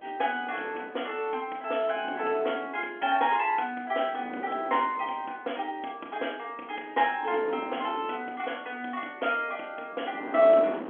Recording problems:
telephone audio; 220 Hz to 3.4 kHz, G.711
wind noise; below 760 Hz, SNR 14 dB

